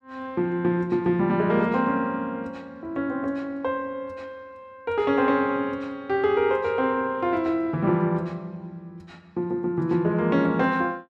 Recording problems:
none

